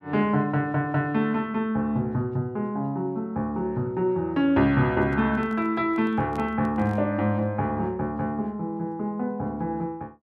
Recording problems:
microphone handling noise; from 5 to 7 s; peak -11 dB vs average level

